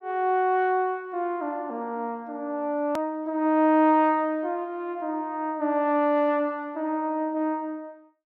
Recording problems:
edit click; at 3 s

